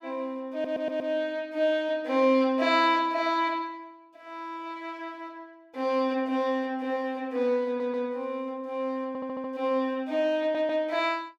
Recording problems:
audio stuttering; 4 times, first at 0.5 s

